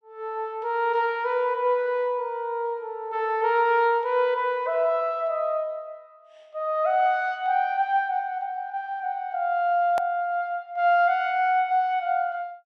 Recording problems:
click at an edit; at 10 s

